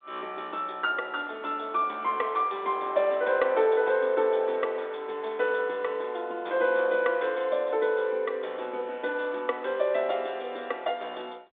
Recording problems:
phone line; 300 Hz to 3.6 kHz, G.726

